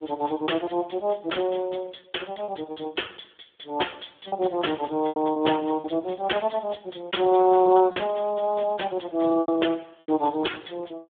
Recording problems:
telephone audio; 260 Hz to 3.4 kHz, Speex
packet loss; 5% of the sound replaced, filled with repeated pitch periods

